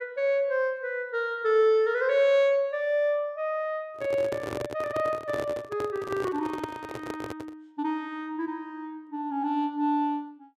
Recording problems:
handling noise; from 4 to 7.5 s; peak -2 dB vs average level

